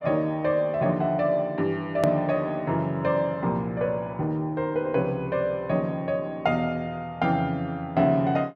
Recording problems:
hard cut with a click; at 2 s

